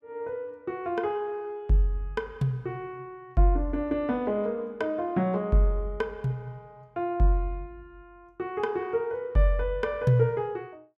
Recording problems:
none

